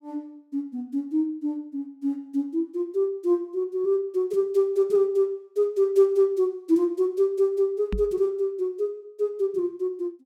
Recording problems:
microphone bump; at 8 s; peak -1 dB vs average level

